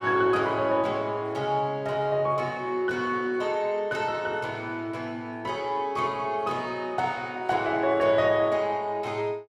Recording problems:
none

